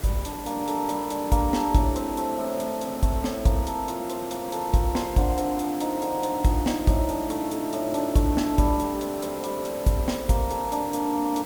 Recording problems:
hiss; slope -5 dB per octave, SNR 12 dB

